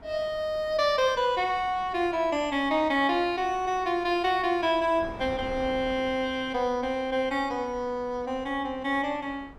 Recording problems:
wind on the microphone; below 710 Hz, SNR 20 dB

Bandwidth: 15 kHz